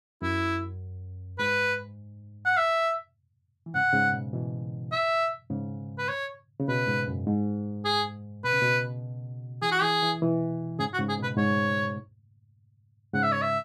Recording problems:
none

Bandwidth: 14.5 kHz